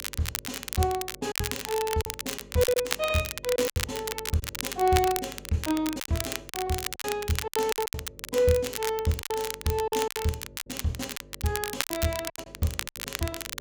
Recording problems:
electrical hum; 50 Hz, harmonics up to 600 Hz, SNR 21 dB
crackling; vinyl, SNR 5 dB
lost packets; 10% of the sound replaced, filled with silence

